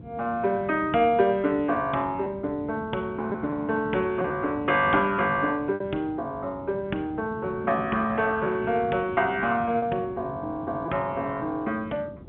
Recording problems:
telephone audio; 240 Hz to 3.7 kHz, G.711
wind noise; below 340 Hz, SNR 15 dB
lost packets; 2% of the sound replaced, filled with repeated pitch periods

